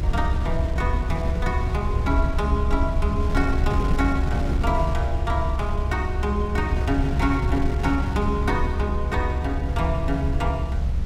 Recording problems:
low-frequency rumble; below 70 Hz, strongest tone 68 Hz, SNR 0 dB
wind on the microphone; below 140 Hz, SNR 3 dB

